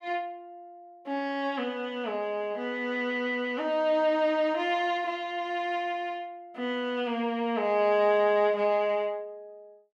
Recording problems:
none

